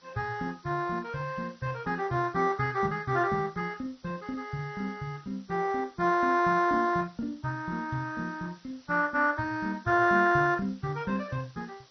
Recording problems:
lossy codec; MP2, log-spectral distance 7 dB, nothing above 6 kHz
hiss; SNR 29 dB

